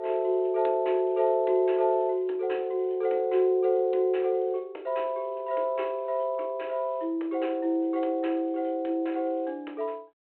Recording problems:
phone line; 280 Hz to 3.2 kHz, G.726

